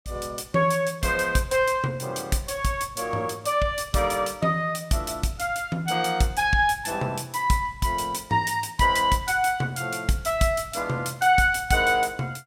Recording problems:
none

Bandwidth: 16.5 kHz